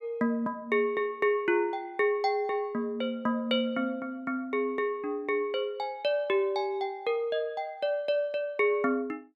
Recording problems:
none

